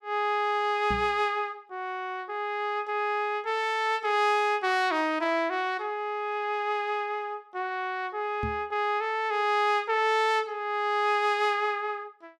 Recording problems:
knock on the microphone; at 1 s and at 8.5 s; peak -3 dB vs average level

